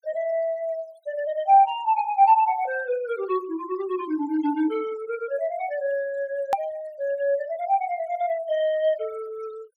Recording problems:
noise reduction artefacts; signal-to-artefact ratio 24 dB
hard cut with a click; at 6.5 s

